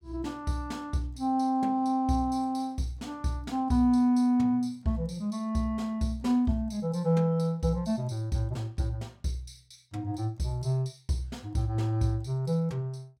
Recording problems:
none

